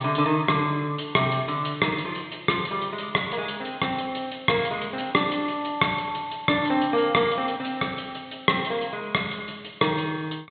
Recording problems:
treble missing; nothing above 4 kHz

